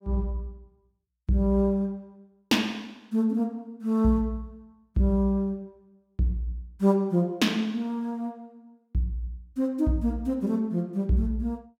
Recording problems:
none

